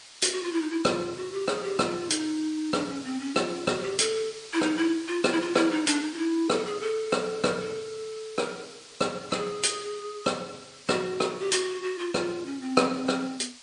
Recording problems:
codec artefacts; MP3, log-spectral distance 6 dB, nothing above 9.5 kHz
hiss; slope +2 dB per octave, SNR 17 dB

